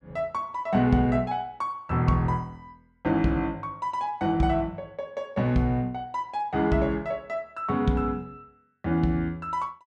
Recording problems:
none

